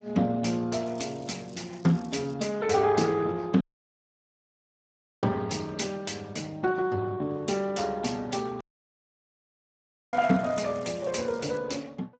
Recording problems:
lossy compression; Speex, log-spectral distance 5 dB, nothing above 7.6 kHz
crackle; from 1 to 2.5 s and from 10 to 12 s; loose cable, SNR 25 dB
audio cutting out; at 3.5 s for 1.5 s and at 8.5 s for 1.5 s

